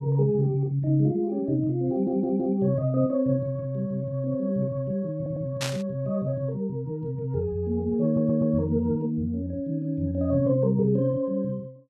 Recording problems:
stutter; at 2 s, at 5 s and at 8 s
burst of static; at 5.5 s; peak 0 dB vs average level

